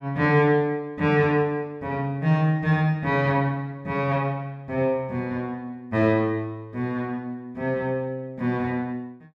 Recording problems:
none

